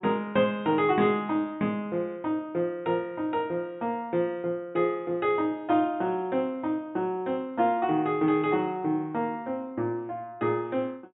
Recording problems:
low-pass filter; nothing above 4 kHz

